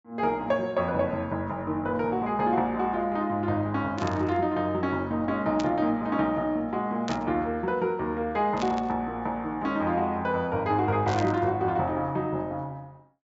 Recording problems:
treble missing; nothing above 8 kHz
static burst; 5 times, first at 4 s; peak -5 dB vs average level

